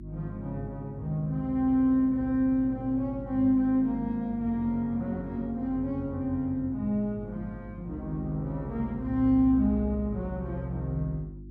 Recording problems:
electrical hum; 50 Hz, harmonics up to 350 Hz, SNR 16 dB

